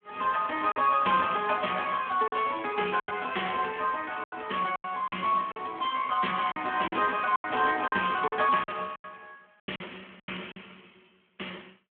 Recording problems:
telephone audio; 220 Hz to 3.3 kHz, Speex
packet loss; 9% of the sound replaced, filled with silence

